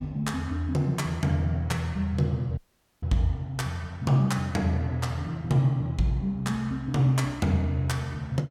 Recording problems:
dropout; at 2.5 s

